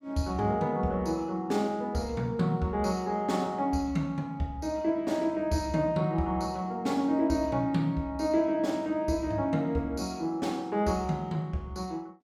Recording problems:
none

